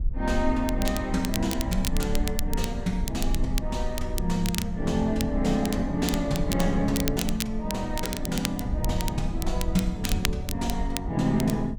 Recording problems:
rumble; below 54 Hz, strongest tone 22 Hz, SNR 7 dB
wind noise; below 100 Hz, SNR 12 dB
crackling; vinyl, SNR 8 dB

